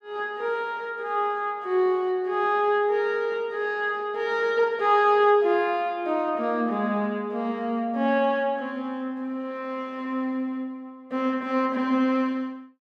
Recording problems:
none

